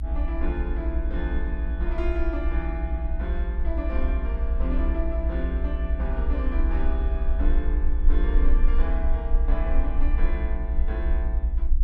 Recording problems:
electrical hum; 60 Hz, harmonics up to 300 Hz, SNR 6 dB
rumble; below 54 Hz, strongest tone 22 Hz, SNR -7 dB

